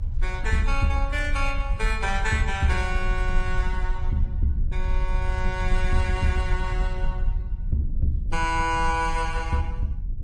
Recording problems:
lossy compression; MP3, then Opus, log-spectral distance 2 dB
low-frequency rumble; below 54 Hz, strongest tone 24 Hz, SNR 2 dB

